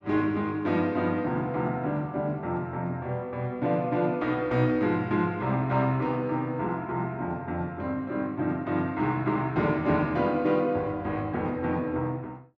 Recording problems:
none

